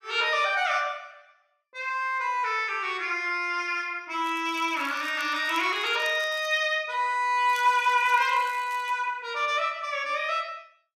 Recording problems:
crackle; from 4 to 6.5 s and from 7.5 to 9 s; loose cable, SNR 23 dB

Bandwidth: 14.5 kHz